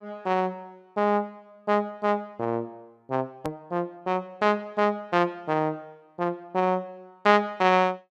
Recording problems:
hard cut with a click; at 3.5 s

